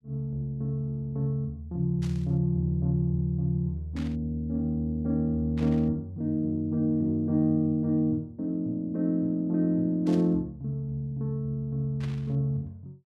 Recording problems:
burst of static; 5 times, first at 2 s; peak -13 dB vs average level

